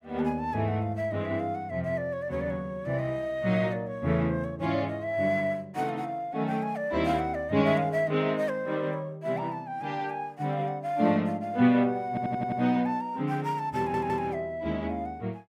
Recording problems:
audio stuttering; at 12 s and at 14 s

